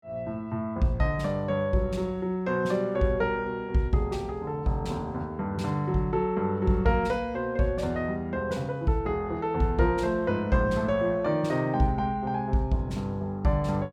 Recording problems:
none

